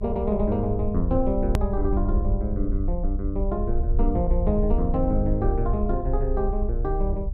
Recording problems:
rumble; below 62 Hz, strongest tone 32 Hz, SNR 1 dB
edit click; at 1.5 s

